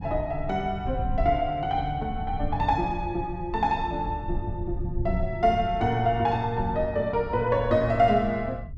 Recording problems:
rumble; below 110 Hz, SNR 9 dB

